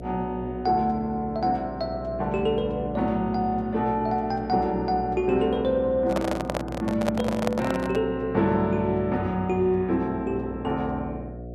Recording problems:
electrical hum; 60 Hz, harmonics up to 720 Hz, SNR 12 dB
handling noise; from 6 to 8 s; peak +2 dB vs average level

